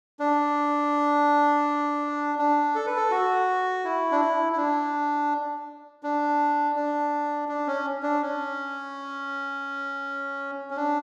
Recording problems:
none

